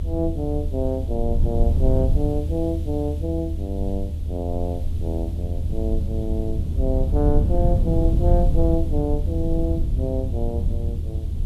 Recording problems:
electrical hum; 60 Hz, harmonics up to 660 Hz, SNR 21 dB
hiss; SNR 26 dB
low-frequency rumble; below 82 Hz, SNR -3 dB

